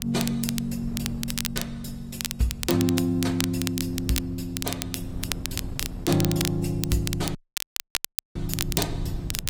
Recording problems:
lossy compression; AAC, log-spectral distance 2 dB, nothing above 15.1 kHz
low-frequency rumble; below 110 Hz, SNR 16 dB
wind noise; below 160 Hz, SNR 14 dB
crackle; vinyl, SNR 4 dB
audio cutting out; at 7.5 s for 1 s

